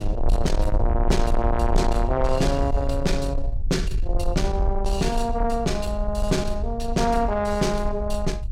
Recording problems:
distorted audio; soft clipping, signal-to-distortion ratio 10 dB
low-frequency rumble; below 58 Hz, SNR 3 dB

